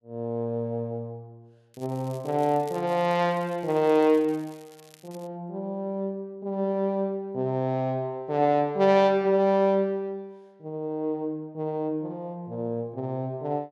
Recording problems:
crackle; from 1.5 to 5.5 s; loose cable, SNR 27 dB

